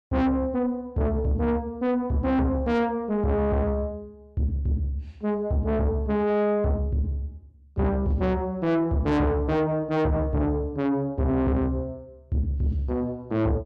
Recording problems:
distortion; soft clipping, signal-to-distortion ratio 8 dB

